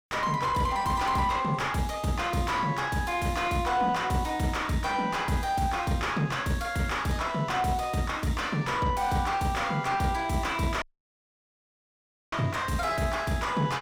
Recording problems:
distorted audio; soft clipping, signal-to-distortion ratio 8 dB
dropout; at 11 s for 1.5 s

